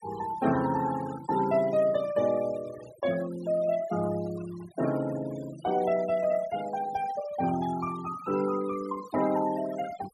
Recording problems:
denoising artefacts; signal-to-artefact ratio 16 dB

